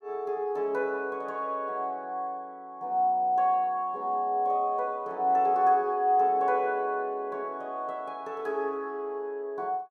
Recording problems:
none

